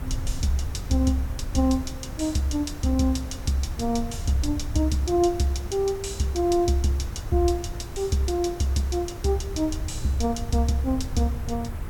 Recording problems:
hiss; SNR 16 dB
low-frequency rumble; below 92 Hz, SNR 10 dB

